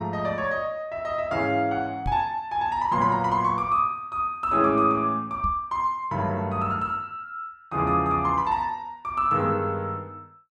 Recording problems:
microphone thump; at 2 s and at 5.5 s; peak -3 dB vs average level

